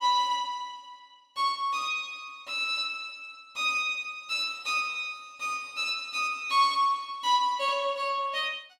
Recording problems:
none

